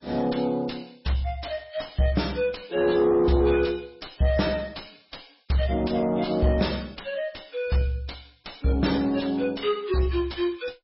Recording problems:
lossy compression; MP3, log-spectral distance 7 dB, nothing above 5.5 kHz
distorted audio; soft clipping, signal-to-distortion ratio 9 dB

